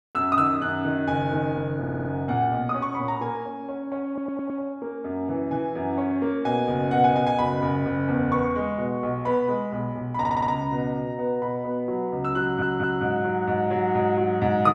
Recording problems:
audio stuttering; 4 times, first at 2 s

